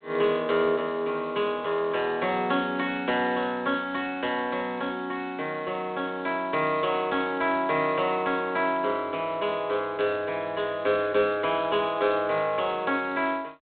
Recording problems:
telephone audio; 170 Hz to 3.9 kHz, G.726

